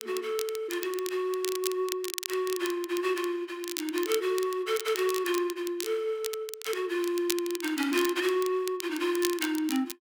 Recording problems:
crackle; vinyl, SNR 8 dB

